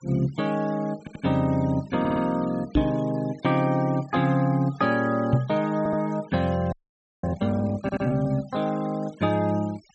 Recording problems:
treble missing; nothing above 8 kHz
denoising artefacts; signal-to-artefact ratio 23 dB
stutter; 4 times, first at 1 s
knock on the microphone; at 3 s and at 5.5 s; peak +7 dB vs average level
frozen audio; at 6.5 s for 0.5 s

